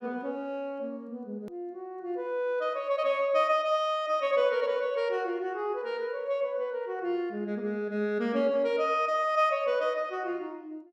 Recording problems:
hard cut with a click; at 1.5 s

